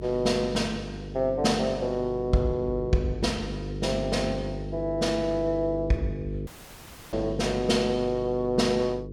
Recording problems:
mains hum; 50 Hz, harmonics up to 500 Hz, SNR 9 dB
audio cutting out; at 6.5 s for 0.5 s

